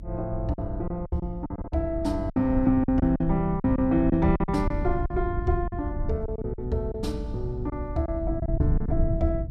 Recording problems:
low-frequency rumble; below 98 Hz, SNR 5 dB
lost packets; 10% of the sound replaced, filled with silence

